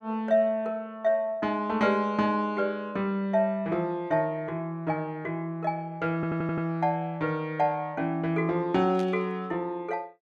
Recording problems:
audio stuttering; at 6 s
burst of static; at 9 s; peak -11 dB vs average level

